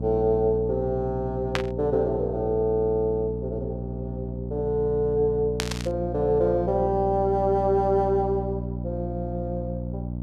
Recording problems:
hum; 60 Hz, harmonics up to 660 Hz, SNR 7 dB
burst of static; at 1.5 s and at 5.5 s; peak +3 dB vs average level

